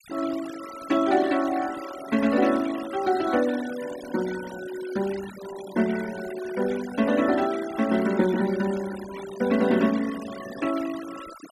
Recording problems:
noise reduction artefacts; signal-to-artefact ratio 15 dB

